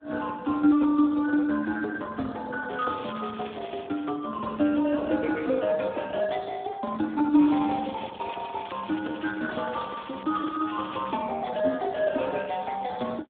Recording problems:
telephone audio; 240 Hz to 2.5 kHz, Speex
crackling; from 2.5 to 4 s and from 7.5 to 11 s; loose cable, SNR 19 dB

